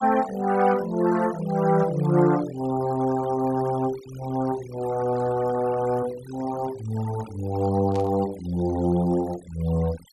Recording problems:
denoising artefacts; signal-to-artefact ratio 17 dB
burst of static; at 8 s; peak -14 dB vs average level

